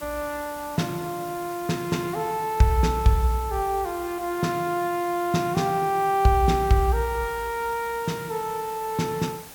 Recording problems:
hiss; slope -2 dB per octave, SNR 16 dB

